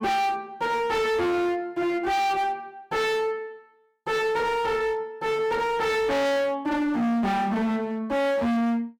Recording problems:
distorted audio; hard clipping, signal-to-distortion ratio 6 dB

